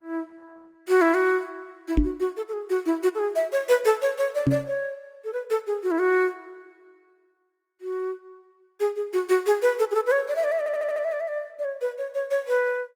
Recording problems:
lossy compression; Opus, log-spectral distance 2 dB, nothing above 19 kHz
knock on the microphone; at 2 s and at 4.5 s; peak +7 dB vs average level
audio stuttering; at 11 s

